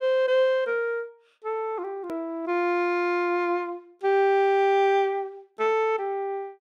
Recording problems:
click at an edit; at 2 s

